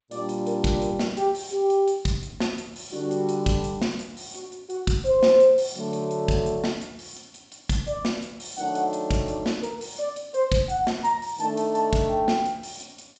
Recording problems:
codec artefacts; G.722, log-spectral distance 6 dB, nothing above 7.3 kHz

